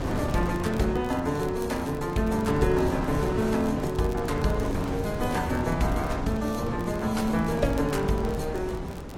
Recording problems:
codec artefacts; AAC, log-spectral distance 3 dB, nothing above 13.8 kHz
wind on the microphone; below 490 Hz, SNR 5 dB
crackling; vinyl, SNR 24 dB

